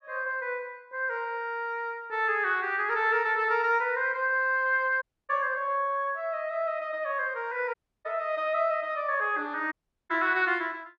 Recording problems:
audio cutting out; at 5 s, at 7.5 s and at 9.5 s

